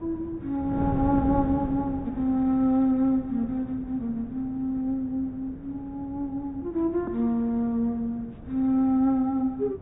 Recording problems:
treble missing; nothing above 4 kHz
wind noise; below 290 Hz, SNR 11 dB

